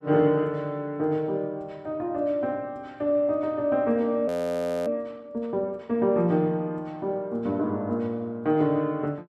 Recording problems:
frozen audio; at 4.5 s for 0.5 s

